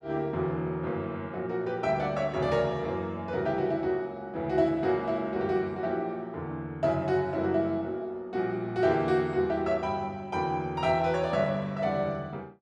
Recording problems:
none

